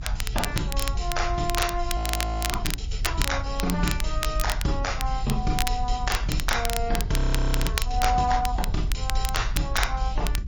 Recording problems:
lossy codec; MP3, log-spectral distance 2 dB
rumble; below 58 Hz, SNR 2 dB
crackling; vinyl, SNR 5 dB
audio freezing; at 2 s for 0.5 s and at 7 s for 0.5 s

